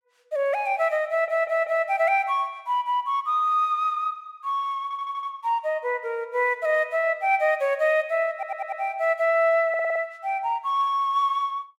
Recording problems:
audio stuttering; 4 times, first at 1 s

